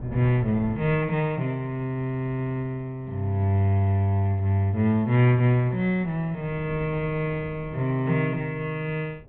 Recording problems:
treble cut off; nothing above 4 kHz
wind on the microphone; below 220 Hz, SNR 21 dB

